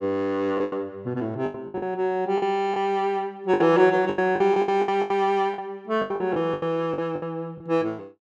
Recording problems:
lost packets; 14% of the sound replaced, filled with the last packet

